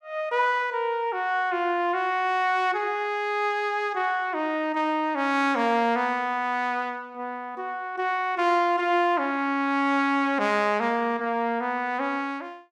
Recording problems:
none

